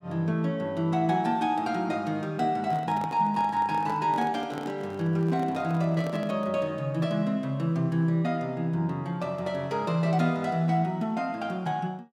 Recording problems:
handling noise; from 2.5 to 6.5 s; peak -6 dB vs average level

